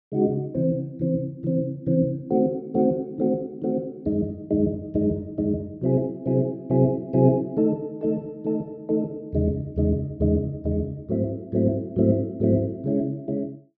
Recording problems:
none

